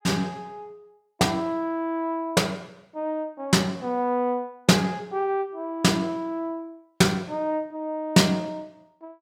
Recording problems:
none

